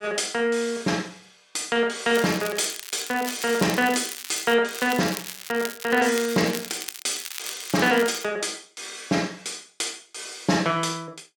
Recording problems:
crackle; from 2 to 4.5 s and from 4.5 to 8.5 s; loose cable, SNR 10 dB

